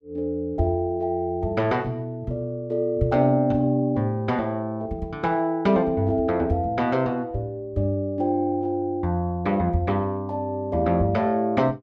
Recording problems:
none

